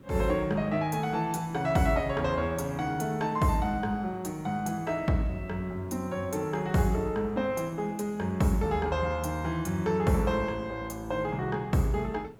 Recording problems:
background hiss; slope -8 dB per octave, SNR 22 dB

